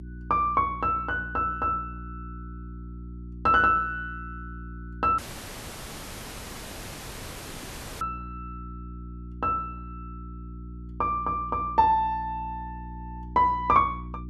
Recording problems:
hum; 60 Hz, harmonics up to 360 Hz, SNR 15 dB
dropout; at 5 s for 3 s

